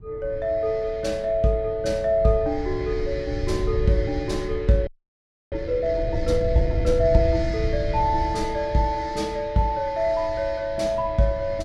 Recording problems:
wind on the microphone; below 98 Hz, SNR 8 dB
audio freezing; at 5 s for 0.5 s

